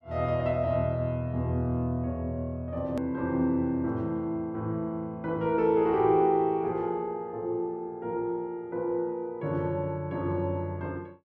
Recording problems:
edit click; at 3 s

